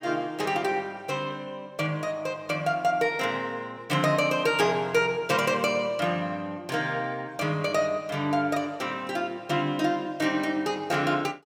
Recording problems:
none

